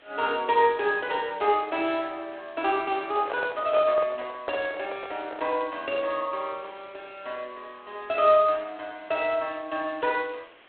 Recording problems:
telephone audio; 260 Hz to 3.9 kHz, G.726
hiss; SNR 27 dB
handling noise; from 3 to 5.5 s; peak -2 dB vs average level

